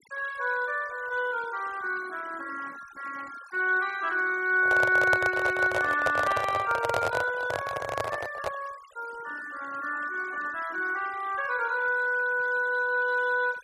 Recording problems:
denoising artefacts; signal-to-artefact ratio 20 dB
handling noise; from 4.5 to 8.5 s; peak +3 dB vs average level

